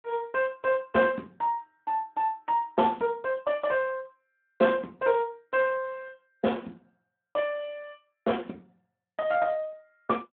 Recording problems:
telephone audio; 190 Hz to 3.5 kHz, Speex

